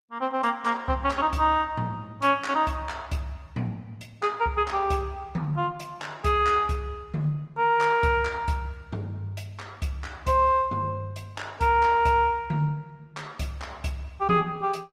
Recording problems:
lossy codec; Opus, log-spectral distance 2 dB, nothing above 16.6 kHz

